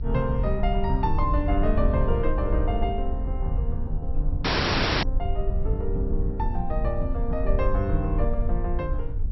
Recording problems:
low-pass filter; nothing above 5.7 kHz
electrical hum; 50 Hz, harmonics up to 600 Hz, SNR 19 dB
wind on the microphone; below 62 Hz, SNR -1 dB
dropout; at 4.5 s for 0.5 s

